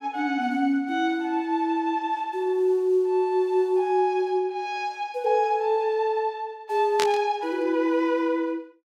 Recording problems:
burst of static; at 7 s; peak +1 dB vs average level

